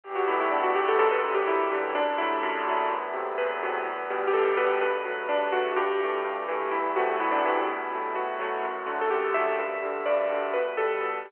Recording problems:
telephone audio; 340 Hz to 3.2 kHz, G.711

